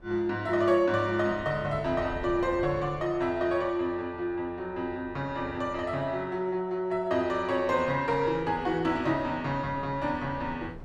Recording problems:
wind noise; below 300 Hz, SNR 19 dB

